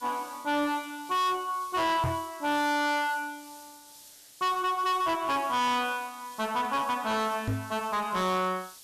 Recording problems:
distorted audio; hard clipping, signal-to-distortion ratio 8 dB
hiss; SNR 19 dB
microphone thump; at 2 s and at 7.5 s; peak +2 dB vs average level

